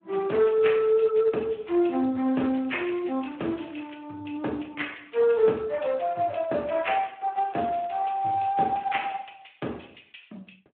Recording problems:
phone line; 220 Hz to 3.2 kHz, Speex
crackling; from 2.5 to 4 s and from 7.5 to 9 s; loose cable, SNR 26 dB

